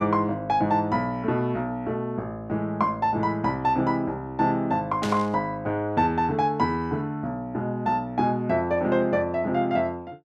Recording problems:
burst of static; at 5 s; peak -4 dB vs average level

